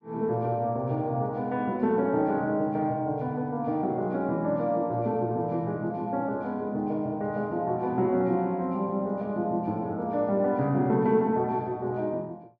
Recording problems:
none

